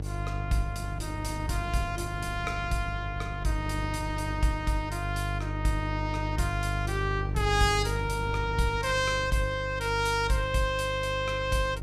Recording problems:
electrical hum; 50 Hz, harmonics up to 600 Hz, SNR 5 dB
wind on the microphone; below 230 Hz, SNR 16 dB

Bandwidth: 15 kHz